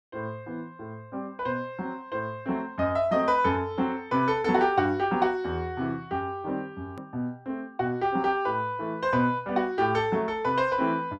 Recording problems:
edit click; at 7 s

